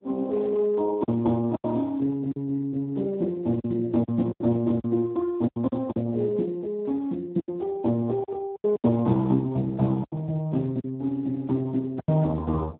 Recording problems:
treble missing; nothing above 4 kHz
lossy codec; Opus, then Speex, log-spectral distance 2 dB
packet loss; 8% of the sound replaced, filled with silence

